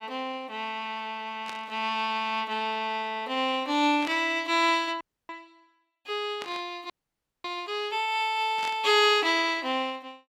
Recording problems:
burst of static; 4 times, first at 1.5 s; peak -7 dB vs average level
frozen audio; at 5 s and at 7 s for 0.5 s

